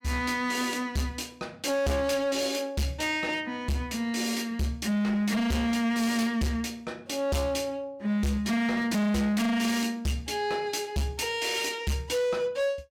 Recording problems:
distortion; hard clipping, signal-to-distortion ratio 7 dB

